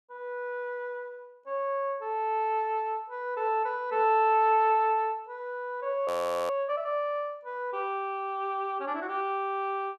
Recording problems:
frozen audio; at 6 s

